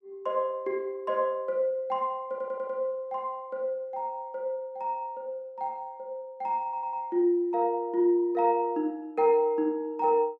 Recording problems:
stutter; at 2.5 s and at 6.5 s

